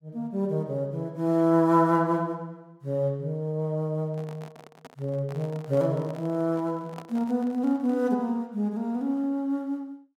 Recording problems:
handling noise; from 4 to 8 s; peak -10 dB vs average level

